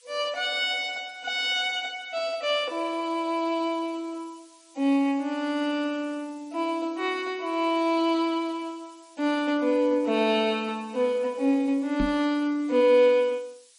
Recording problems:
lossy codec; MP3, log-spectral distance 5 dB, nothing above 9.5 kHz
background hiss; slope +6 dB per octave, SNR 28 dB
microphone thump; at 12 s; peak +3 dB vs average level

